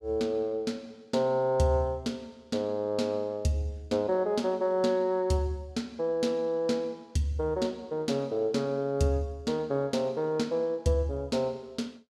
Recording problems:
none

